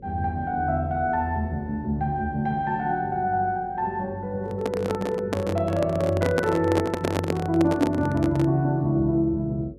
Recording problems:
electrical hum; 50 Hz, harmonics up to 550 Hz, SNR 23 dB
handling noise; from 4.5 to 8.5 s; peak +4 dB vs average level

